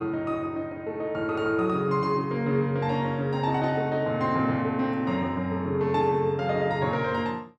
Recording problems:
none

